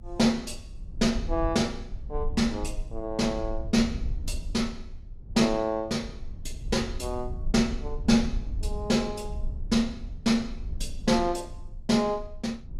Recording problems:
rumble; below 62 Hz, strongest tone 22 Hz, SNR 10 dB

